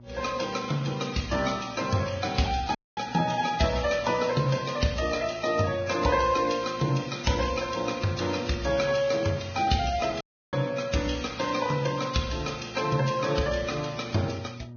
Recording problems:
codec artefacts; Vorbis, log-spectral distance 5 dB, nothing above 6.5 kHz
electrical hum; 60 Hz, harmonics up to 600 Hz, SNR 20 dB
dropout; at 3 s and at 10 s

